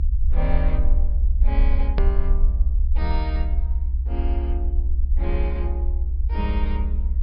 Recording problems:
low-pass filter; nothing above 5.5 kHz
low-frequency rumble; below 64 Hz, SNR -10 dB
edit click; at 2 s

